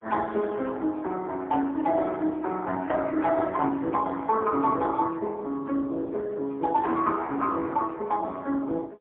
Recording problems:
telephone audio; 190 Hz to 2.5 kHz, AMR-NB, then MP3

